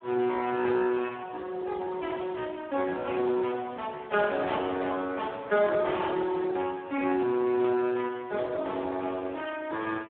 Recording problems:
telephone audio; 220 Hz to 3.3 kHz, Speex

